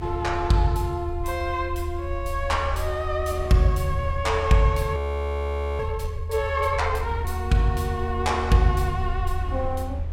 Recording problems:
rumble; below 80 Hz, SNR 6 dB
wind on the microphone; below 510 Hz, SNR 20 dB
audio freezing; at 5 s for 1 s

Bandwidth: 16.5 kHz